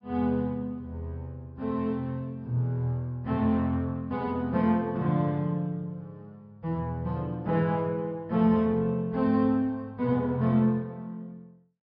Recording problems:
treble cut off; nothing above 5.2 kHz

